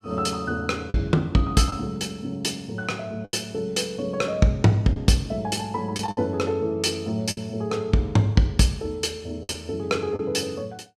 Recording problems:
packet loss; 4% of the sound replaced, filled with the last packet

